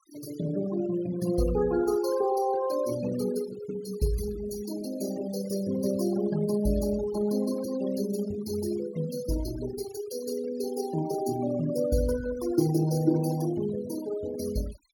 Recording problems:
denoising artefacts; signal-to-artefact ratio 13 dB

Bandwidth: 18 kHz